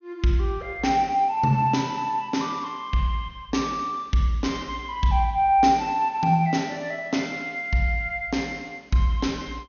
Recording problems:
treble missing; nothing above 6.6 kHz

